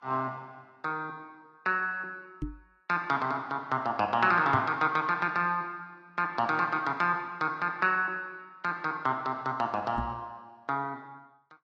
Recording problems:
lossy compression; Vorbis, log-spectral distance 2 dB
microphone thump; at 2.5 s, at 4.5 s and at 10 s; peak -1 dB vs average level

